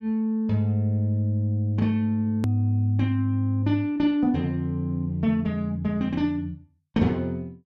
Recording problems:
edit click; at 2.5 s

